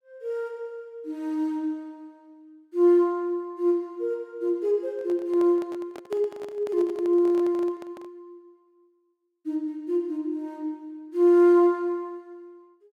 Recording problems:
handling noise; from 5 to 8 s; peak -10 dB vs average level

